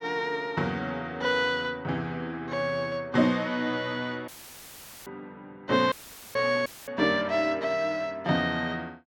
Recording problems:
audio cutting out; at 4.5 s for 1 s, at 6 s and at 6.5 s; filled with static

